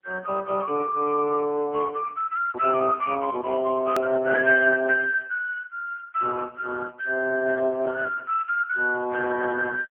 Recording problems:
phone line; 220 Hz to 2.3 kHz, AMR-NB
edit click; at 4 s

